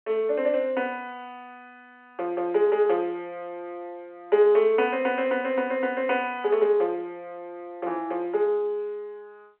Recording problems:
phone line; 300 Hz to 3.6 kHz, G.711

